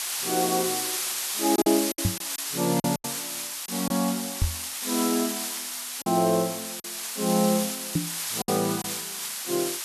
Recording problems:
background hiss; SNR 2 dB
lost packets; 6% of the sound replaced, filled with silence
microphone thump; at 2 s, at 4.5 s and at 8 s; peak +5 dB vs average level

